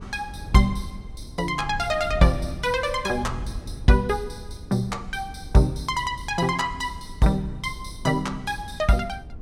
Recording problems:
wind noise; below 110 Hz, SNR 14 dB

